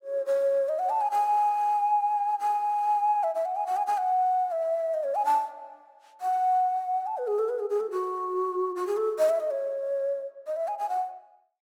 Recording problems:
none

